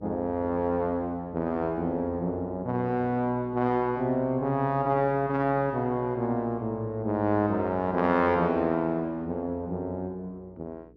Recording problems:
hum; 60 Hz, harmonics up to 480 Hz, SNR 24 dB

